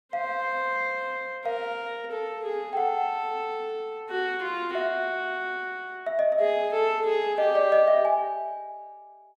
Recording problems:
none

